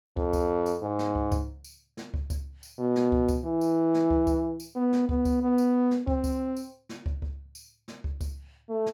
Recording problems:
none

